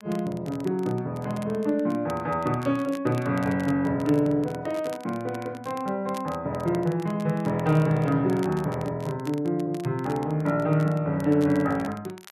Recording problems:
crackle; vinyl, SNR 22 dB

